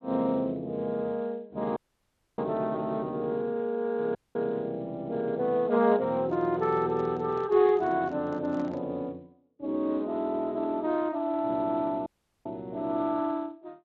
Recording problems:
lossy codec; Speex, log-spectral distance 2 dB
dropout; at 2 s for 0.5 s, at 4 s and at 12 s
handling noise; from 6 to 9 s; peak -10 dB vs average level

